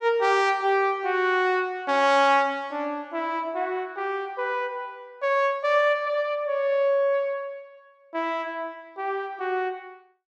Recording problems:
none

